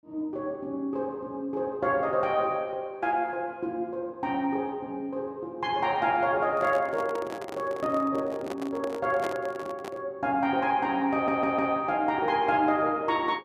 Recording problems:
handling noise; from 6.5 to 10 s; peak -2 dB vs average level
stutter; at 11 s

